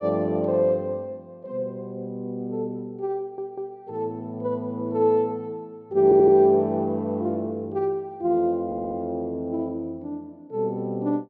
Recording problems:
stutter; at 3 s, at 6 s and at 8.5 s

